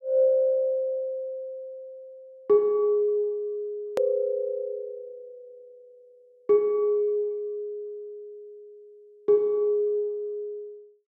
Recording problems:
click at an edit; at 4 s

